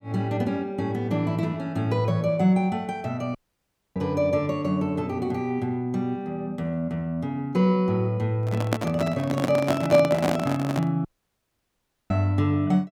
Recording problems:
dropout; at 3.5 s for 0.5 s and at 11 s for 1 s
microphone handling noise; from 8.5 to 11 s; peak +4 dB vs average level

